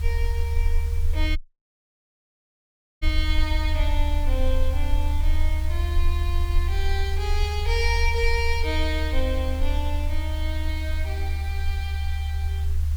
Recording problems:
background hiss; slope 0 dB per octave, SNR 15 dB
rumble; below 74 Hz, strongest tone 22 Hz, SNR -5 dB
dropout; at 1.5 s for 1.5 s

